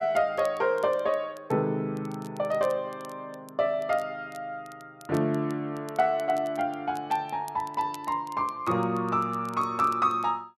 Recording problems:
crackle; vinyl, SNR 25 dB

